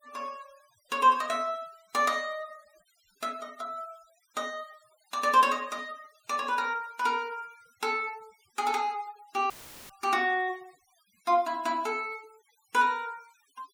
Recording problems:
noise reduction artefacts; signal-to-artefact ratio 26 dB
dropout; at 9.5 s; filled with static

